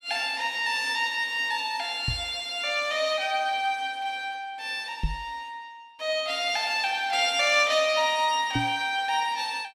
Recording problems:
microphone thump; at 2 s, at 5 s and at 8.5 s; peak +1 dB vs average level

